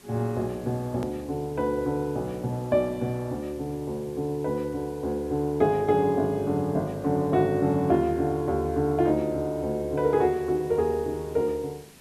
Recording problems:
background hiss; slope -2 dB per octave, SNR 25 dB
click at an edit; at 1 s

